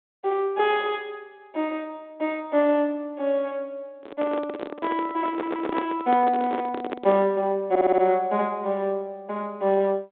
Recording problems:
telephone audio; 220 Hz to 3.7 kHz, G.726
microphone handling noise; from 4 to 7.5 s; peak +1 dB vs average level
audio stuttering; at 5.5 s and at 7.5 s

